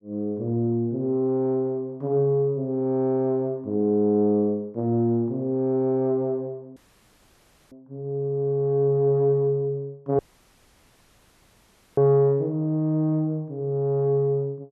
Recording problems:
dropout; at 7 s for 1 s and at 10 s for 2 s

